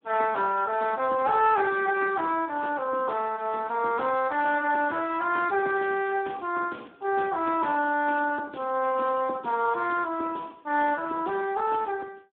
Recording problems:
telephone audio; 260 Hz to 3.6 kHz, Speex

